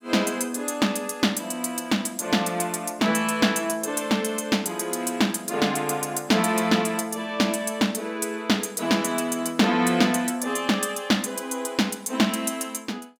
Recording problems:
none

